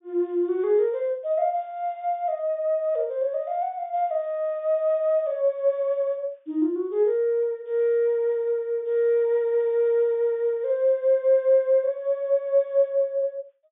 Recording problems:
treble missing; nothing above 3.6 kHz

